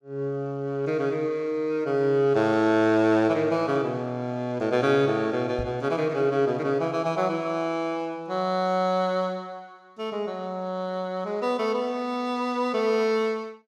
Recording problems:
microphone thump; at 5.5 s; peak -3 dB vs average level

